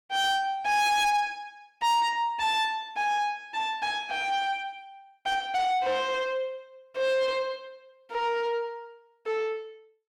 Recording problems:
distorted audio; soft clipping, signal-to-distortion ratio 7 dB

